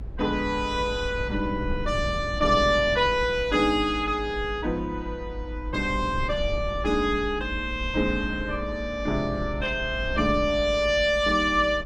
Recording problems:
low-frequency rumble; below 86 Hz, SNR 10 dB

